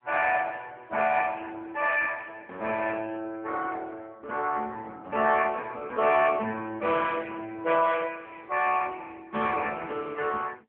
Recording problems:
telephone audio; 370 Hz to 2.3 kHz, AMR-NB

